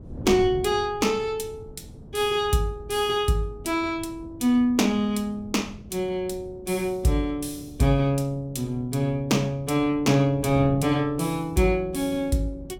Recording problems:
wind on the microphone; below 240 Hz, SNR 17 dB

